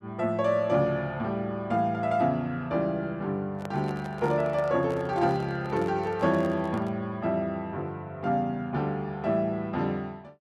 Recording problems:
microphone handling noise; from 3.5 to 7 s; peak -7 dB vs average level

